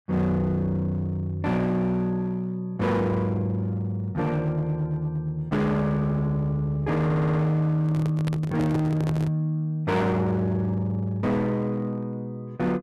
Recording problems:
distorted audio; hard clipping, uneven, signal-to-distortion ratio 10 dB
audio stuttering; at 7 s
microphone handling noise; from 8 to 9.5 s; peak -1 dB vs average level

